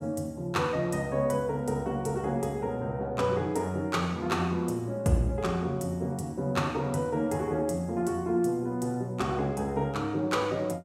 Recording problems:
none

